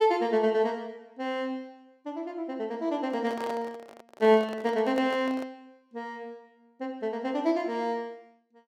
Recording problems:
handling noise; from 3 to 5.5 s; peak -5 dB vs average level

